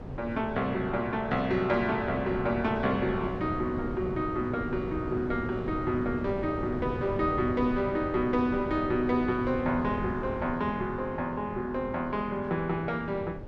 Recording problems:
wind noise; below 390 Hz, SNR 9 dB

